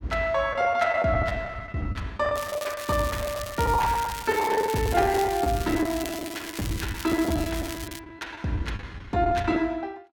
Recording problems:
packet loss; 17% of the sound replaced, filled with the last packet
crackle; from 2.5 to 8 s; loose cable, SNR 11 dB

